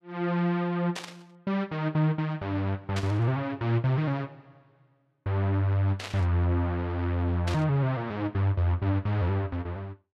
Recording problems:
static burst; 4 times, first at 1 s; peak -4 dB vs average level

